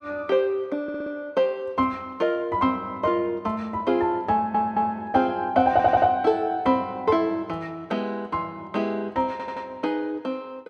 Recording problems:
stutter; 4 times, first at 1 s

